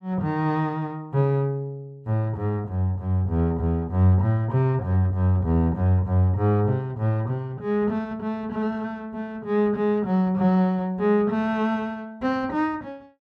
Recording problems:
none

